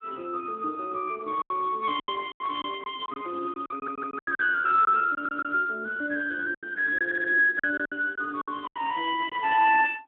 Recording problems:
phone line; 240 Hz to 3.5 kHz, Speex
packet loss; 10% of the sound replaced, filled with silence
audio stuttering; at 3.5 s, at 5 s and at 7 s

